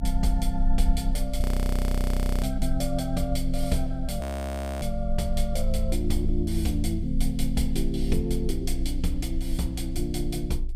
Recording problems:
low-frequency rumble; below 56 Hz, strongest tone 22 Hz, SNR 2 dB
frozen audio; at 1.5 s for 1 s and at 4 s for 0.5 s

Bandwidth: 15.5 kHz